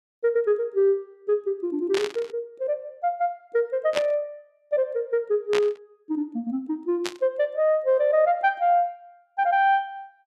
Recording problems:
static burst; 4 times, first at 2 s; peak 0 dB vs average level

